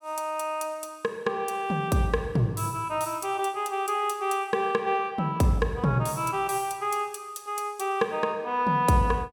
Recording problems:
none

